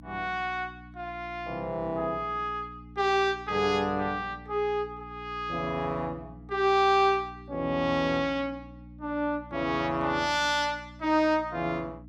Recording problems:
hum; 60 Hz, harmonics up to 300 Hz, SNR 19 dB

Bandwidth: 16 kHz